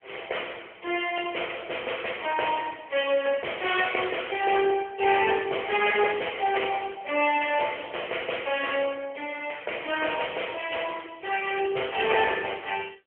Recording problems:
telephone audio; 320 Hz to 3.3 kHz, AMR-NB

